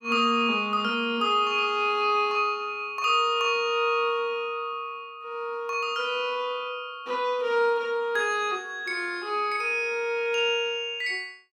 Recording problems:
none

